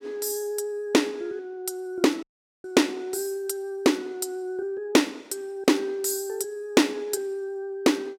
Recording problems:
audio cutting out; at 2 s

